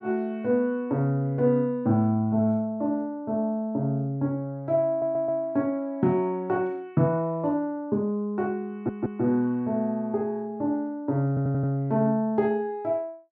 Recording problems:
audio stuttering; at 5 s, at 8.5 s and at 11 s

